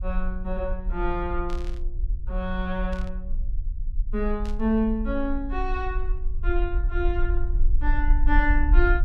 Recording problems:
rumble; below 48 Hz, SNR 0 dB
burst of static; at 1.5 s, at 3 s and at 4.5 s; peak -12 dB vs average level

